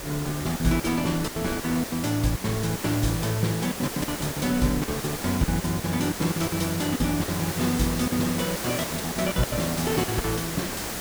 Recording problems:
hiss; slope -3 dB per octave, SNR 5 dB
wind on the microphone; below 210 Hz, SNR 20 dB
lost packets; 16% of the sound replaced, filled with silence

